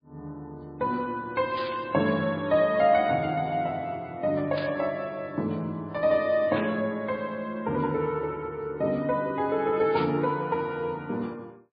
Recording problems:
lossy codec; MP3, log-spectral distance 2 dB, nothing above 4 kHz
burst of static; 4 times, first at 1.5 s; peak -4 dB vs average level

